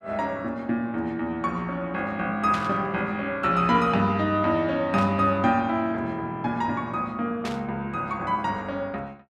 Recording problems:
static burst; at 2.5 s, at 5 s and at 7.5 s; peak -5 dB vs average level

